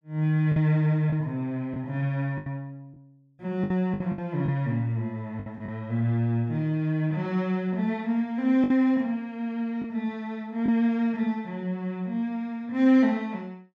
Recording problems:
packet loss; 4% of the sound replaced, filled with the last packet

